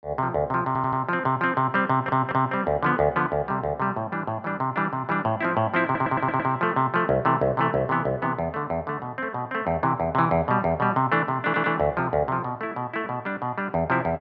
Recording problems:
stutter; 4 times, first at 0.5 s

